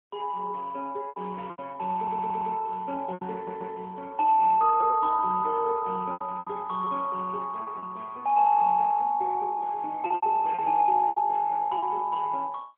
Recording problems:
telephone audio; 280 Hz to 3.3 kHz, AMR-NB
lost packets; 7% of the sound replaced, filled with repeated pitch periods
stutter; at 2 s and at 3.5 s

